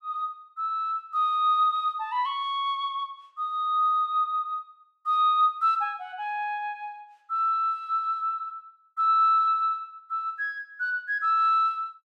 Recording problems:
none

